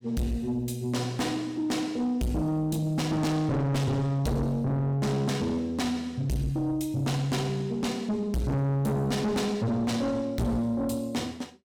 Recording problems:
distortion; soft clipping, signal-to-distortion ratio 6 dB

